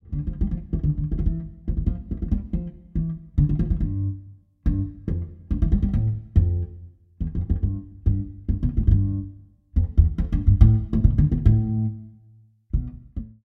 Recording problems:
none

